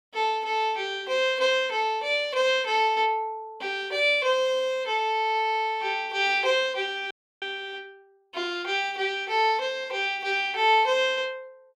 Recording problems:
audio cutting out; at 7 s

